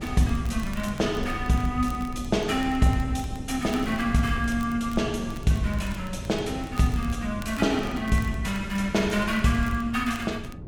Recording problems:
rumble; below 130 Hz, SNR 14 dB
wind on the microphone; below 250 Hz, SNR 14 dB
crackle; vinyl, SNR 23 dB

